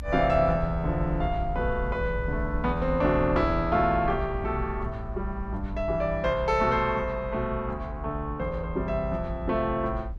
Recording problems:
low-frequency rumble; below 62 Hz, SNR 8 dB

